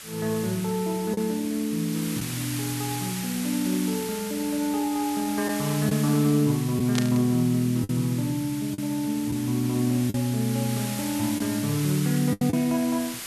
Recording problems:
hiss; slope +1 dB per octave, SNR 9 dB
lost packets; 3% of the sound replaced, filled with the last packet
static burst; at 7 s; peak +1 dB vs average level

